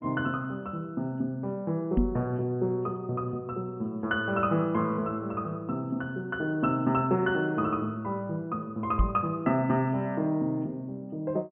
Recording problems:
low-pass filter; nothing above 3.2 kHz
microphone bump; at 2 s and at 9 s; peak +7 dB vs average level

